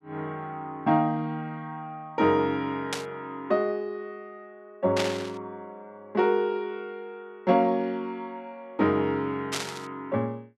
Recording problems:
burst of static; at 3 s, at 5 s and at 9.5 s; peak +3 dB vs average level

